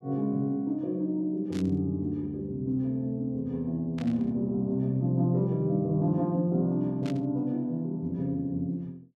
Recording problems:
burst of static; at 1.5 s, at 4 s and at 7 s; peak -11 dB vs average level

